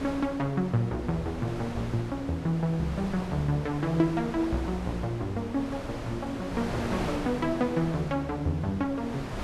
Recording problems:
wind noise; below 1.1 kHz, SNR 8 dB

